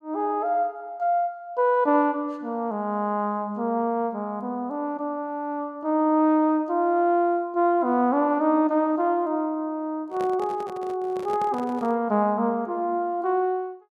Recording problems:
handling noise; from 10 to 12 s; peak -9 dB vs average level

